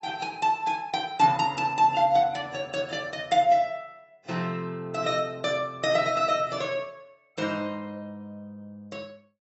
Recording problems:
lossy codec; AAC, log-spectral distance 2 dB, nothing above 7.8 kHz

